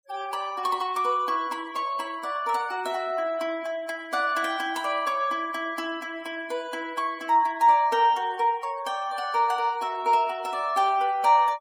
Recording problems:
denoising artefacts; signal-to-artefact ratio 22 dB

